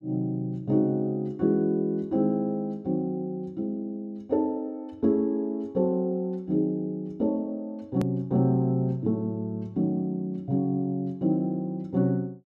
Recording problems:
click at an edit; at 8 s

